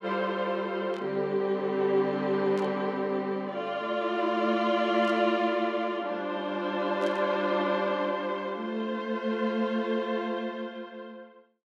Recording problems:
burst of static; 4 times, first at 1 s; peak -14 dB vs average level

